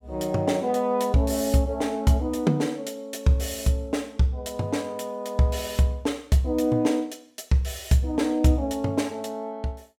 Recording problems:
none

